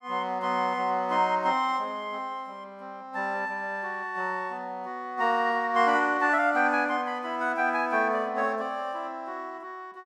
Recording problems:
none

